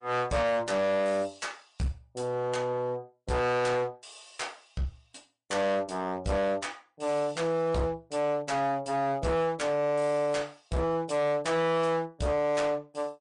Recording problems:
lossy codec; MP3, log-spectral distance 3 dB, nothing above 9.5 kHz
distortion; hard clipping, uneven, signal-to-distortion ratio 6 dB

